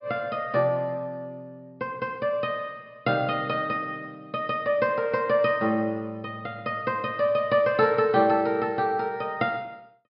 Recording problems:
treble missing; nothing above 5.5 kHz

